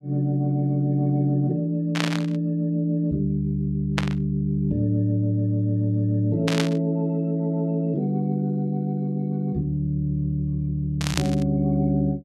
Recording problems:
static burst; 4 times, first at 2 s; peak +2 dB vs average level

